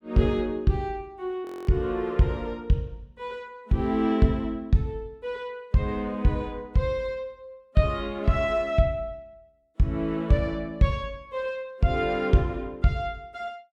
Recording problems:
frozen audio; at 1.5 s

